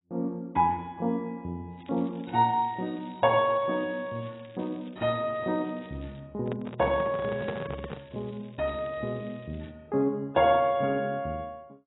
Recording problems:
codec artefacts; AAC, log-spectral distance 4 dB, nothing above 3.4 kHz
crackling; from 2 to 6 s and from 7.5 to 9.5 s; loose cable, SNR 28 dB
microphone handling noise; from 6.5 to 8 s; peak -1 dB vs average level

